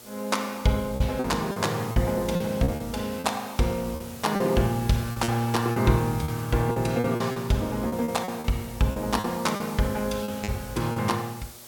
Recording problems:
hum; 60 Hz, harmonics up to 1.6 kHz, SNR 28 dB
background hiss; slope -1 dB per octave, SNR 17 dB
packet loss; 10% of the sound replaced, filled with repeated pitch periods

